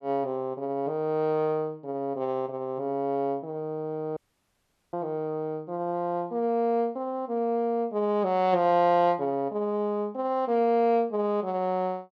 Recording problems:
audio cutting out; at 4 s for 1 s

